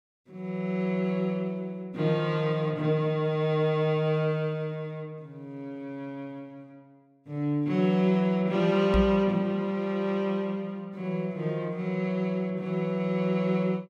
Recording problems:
microphone bump; at 9 s; peak +6 dB vs average level

